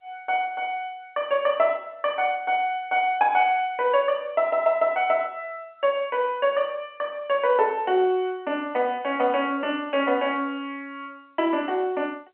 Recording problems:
telephone audio; 300 Hz to 3.2 kHz, G.711

